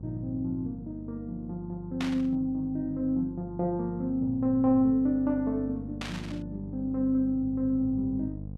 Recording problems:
mains hum; 50 Hz, harmonics up to 550 Hz, SNR 13 dB
burst of static; at 2 s and at 6 s; peak -3 dB vs average level

